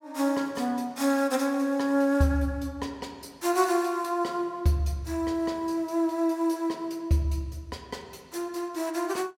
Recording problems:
none

